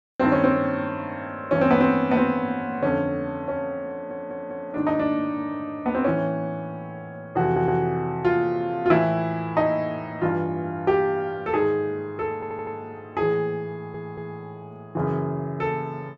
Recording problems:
audio stuttering; 4 times, first at 4 s

